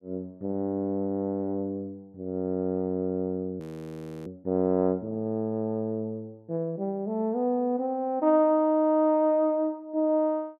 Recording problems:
frozen audio; at 3.5 s for 0.5 s

